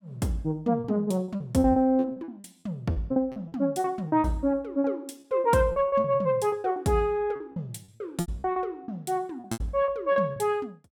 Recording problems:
lost packets; 15% of the sound replaced, filled with repeated pitch periods

